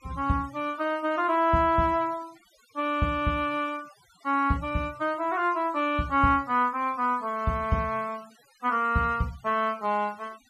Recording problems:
denoising artefacts; signal-to-artefact ratio 25 dB

